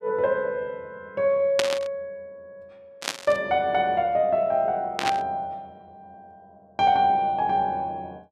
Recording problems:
static burst; at 1.5 s, at 3 s and at 5 s; peak +4 dB vs average level

